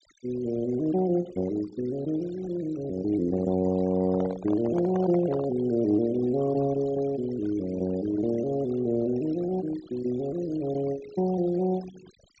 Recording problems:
treble missing; nothing above 8 kHz
denoising artefacts; signal-to-artefact ratio 18 dB
handling noise; from 4 to 5.5 s; peak -6 dB vs average level

